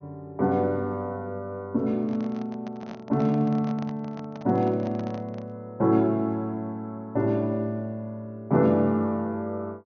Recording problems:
treble missing; nothing above 6.3 kHz
handling noise; from 2 to 5.5 s; peak -9 dB vs average level

